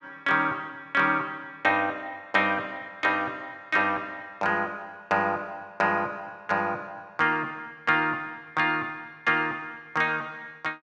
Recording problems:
none

